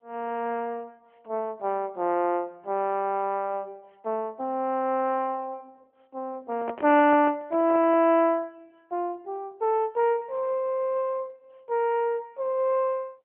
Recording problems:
telephone audio; 240 Hz to 3.2 kHz, AMR-NB
handling noise; from 6.5 to 8 s; peak -4 dB vs average level

